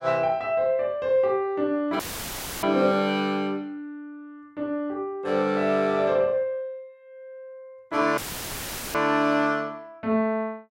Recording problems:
dropout; at 2 s for 0.5 s and at 8 s for 1 s; filled with static

